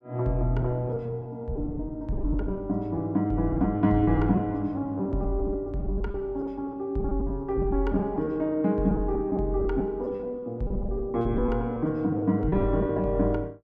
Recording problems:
lost packets; 11% of the sound replaced, filled with repeated pitch periods

